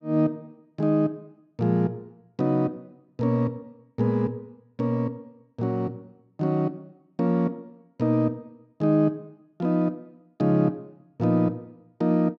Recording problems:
none

